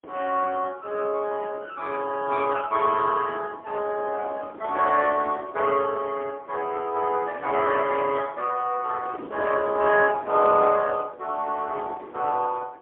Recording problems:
telephone audio; 300 Hz to 3.3 kHz, AMR-NB, then MP3
wind noise; below 630 Hz, SNR 19 dB

